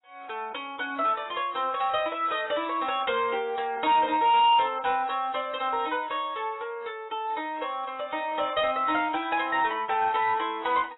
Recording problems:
codec artefacts; AAC, log-spectral distance 4 dB, nothing above 3.8 kHz
distorted audio; soft clipping, signal-to-distortion ratio 7 dB

